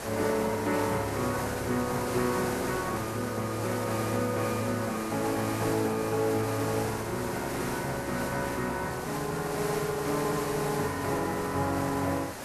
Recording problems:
background hiss; SNR 6 dB

